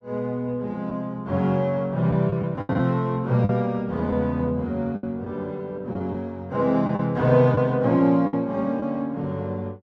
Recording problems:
packet loss; 5% of the sound replaced, filled with the last packet

